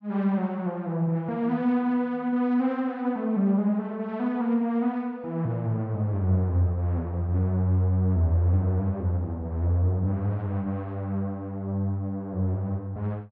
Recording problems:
none

